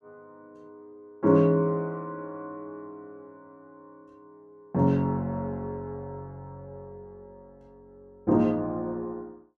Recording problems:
none

